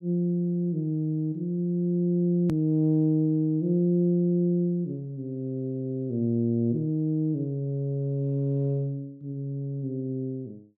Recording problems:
click at an edit; at 2.5 s

